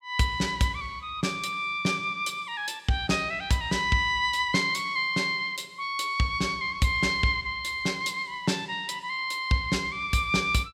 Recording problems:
none

